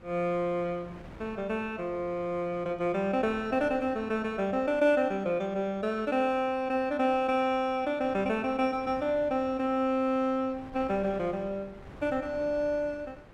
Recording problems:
wind noise; below 760 Hz, SNR 21 dB

